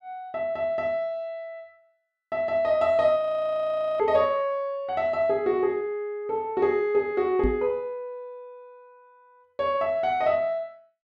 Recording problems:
frozen audio; at 3 s for 1 s
microphone bump; at 7.5 s; peak +1 dB vs average level

